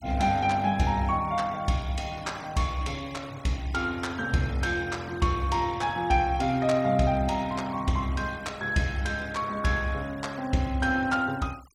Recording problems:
denoising artefacts; signal-to-artefact ratio 22 dB

